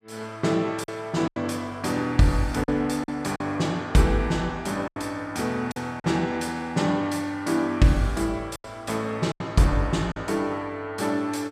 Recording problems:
packet loss; 5% of the sound replaced, filled with silence

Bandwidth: 14.5 kHz